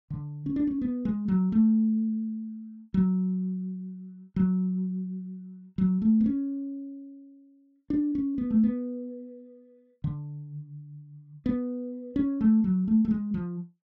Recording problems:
none

